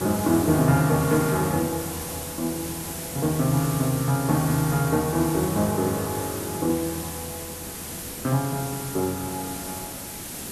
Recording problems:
background hiss; SNR 8 dB

